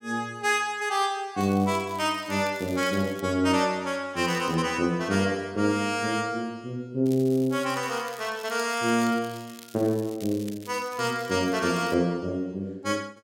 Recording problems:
crackling; from 1.5 to 3 s, at 4 s and from 7 to 12 s; loose cable, SNR 20 dB

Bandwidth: 16 kHz